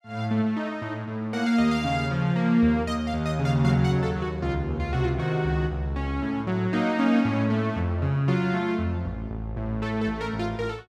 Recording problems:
none

